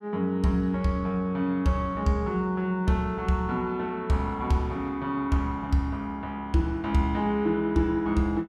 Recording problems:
none

